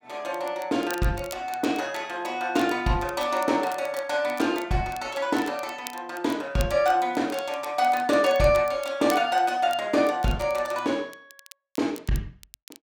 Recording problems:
crackling; vinyl, SNR 20 dB

